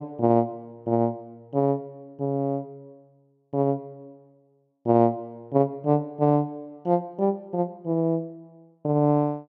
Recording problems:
none

